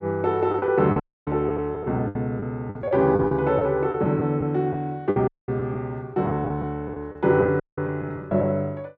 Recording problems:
lost packets; 10% of the sound replaced, filled with the last packet
dropout; at 1 s, at 5.5 s and at 7.5 s

